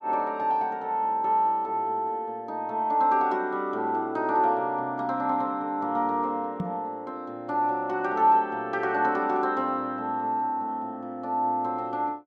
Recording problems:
microphone bump; at 6.5 s; peak 0 dB vs average level

